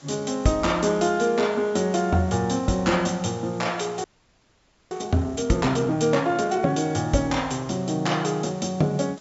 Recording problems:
treble missing; nothing above 8 kHz
hiss; slope -2 dB per octave, SNR 27 dB
audio freezing; at 4 s for 1 s

